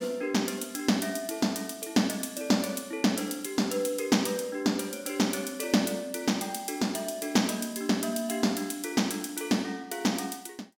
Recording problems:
none

